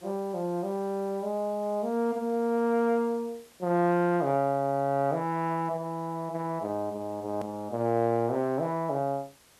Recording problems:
background hiss; slope -2 dB per octave, SNR 27 dB
click at an edit; at 7.5 s

